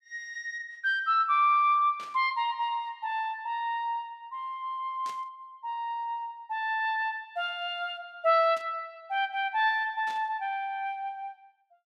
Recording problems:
static burst; 4 times, first at 2 s; peak -12 dB vs average level

